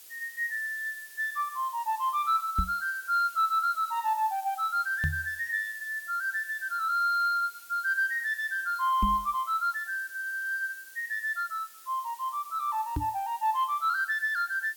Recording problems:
background hiss; SNR 19 dB
knock on the microphone; 4 times, first at 2.5 s; peak +3 dB vs average level

